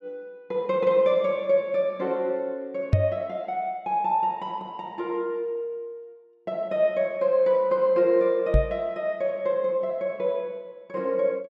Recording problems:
knock on the microphone; at 3 s and at 8.5 s; peak +9 dB vs average level

